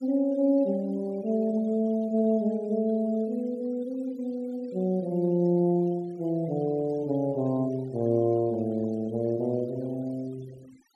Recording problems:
noise reduction artefacts; signal-to-artefact ratio 27 dB

